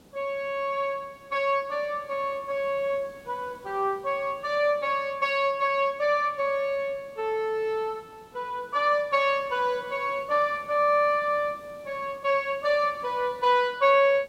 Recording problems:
hiss; SNR 27 dB

